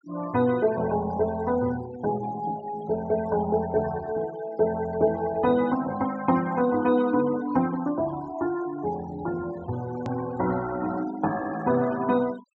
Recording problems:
low-pass filter; nothing above 8 kHz
denoising artefacts; signal-to-artefact ratio 17 dB
edit click; at 10 s

